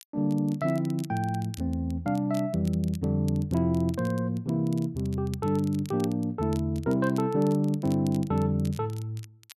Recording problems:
crackling; vinyl, SNR 23 dB

